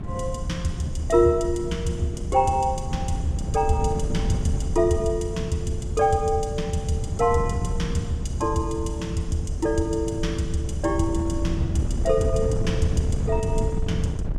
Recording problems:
wind noise; below 140 Hz, SNR 4 dB

